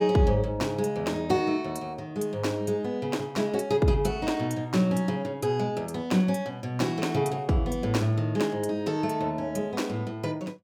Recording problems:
none

